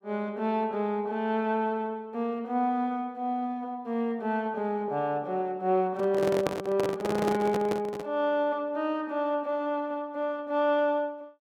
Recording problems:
microphone handling noise; from 6 to 8 s; peak +4 dB vs average level

